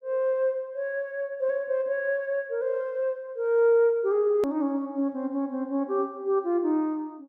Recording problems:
hard cut with a click; at 4.5 s

